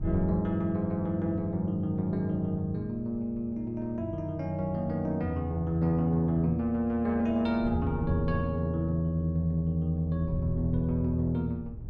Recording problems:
wind noise; below 110 Hz, SNR 15 dB

